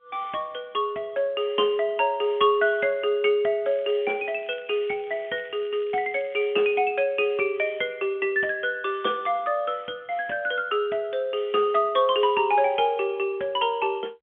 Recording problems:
phone line; 240 Hz to 3.4 kHz, G.711
crackle; at 3.5 s and from 4.5 to 6.5 s; loose cable, SNR 27 dB

